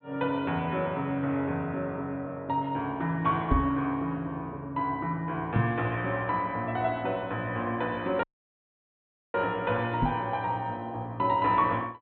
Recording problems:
low-pass filter; nothing above 4 kHz
microphone bump; at 3.5 s, at 5.5 s and at 10 s; peak +7 dB vs average level
dropout; at 8 s for 1 s

